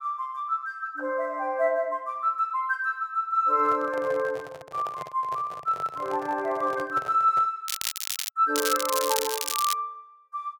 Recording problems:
microphone handling noise; from 3.5 to 7.5 s; peak -8 dB vs average level
crackle; at 7.5 s and from 8.5 to 9.5 s; loose cable, SNR 3 dB

